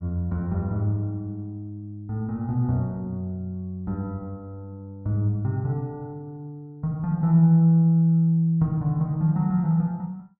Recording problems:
none

